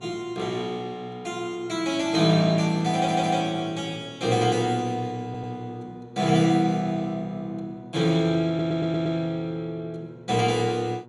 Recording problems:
hum; 60 Hz, harmonics up to 1.4 kHz, SNR 22 dB
stutter; at 3 s, at 5.5 s and at 8.5 s

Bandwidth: 14 kHz